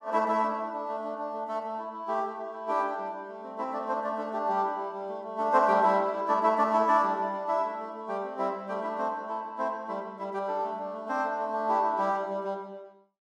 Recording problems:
none

